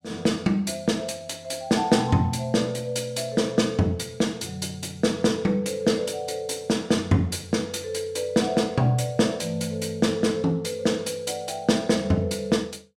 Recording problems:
none

